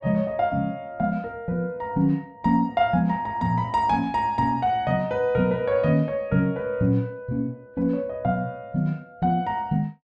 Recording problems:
none

